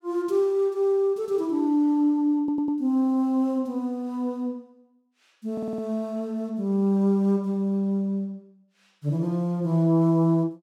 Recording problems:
stutter; at 2.5 s and at 5.5 s

